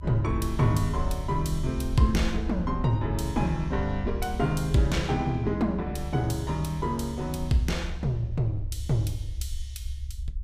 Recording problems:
rumble; below 70 Hz, SNR 7 dB

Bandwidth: 15.5 kHz